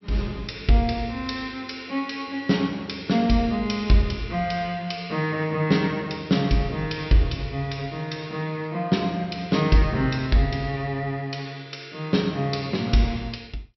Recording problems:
treble missing; nothing above 5.7 kHz

